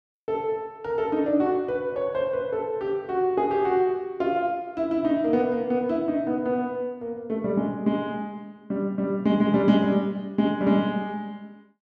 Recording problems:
none

